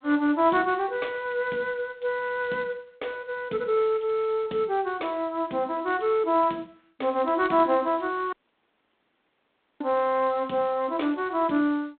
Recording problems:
telephone audio; 190 Hz to 4 kHz, G.726
audio cutting out; at 8.5 s for 1.5 s

